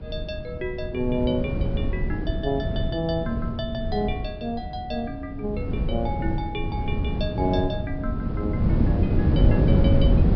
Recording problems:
low-pass filter; nothing above 5.5 kHz
rumble; below 130 Hz, SNR 11 dB
wind on the microphone; below 190 Hz, SNR -4 dB

